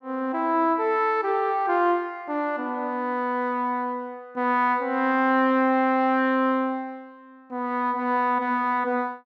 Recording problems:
none

